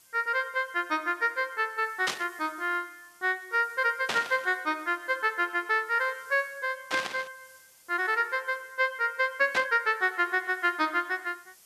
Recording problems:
hiss; SNR 27 dB
burst of static; 4 times, first at 2 s; peak +3 dB vs average level

